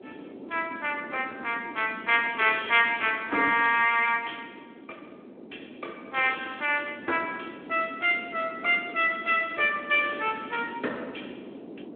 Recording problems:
phone line; 220 Hz to 3.5 kHz, Speex
wind on the microphone; below 460 Hz, SNR 18 dB

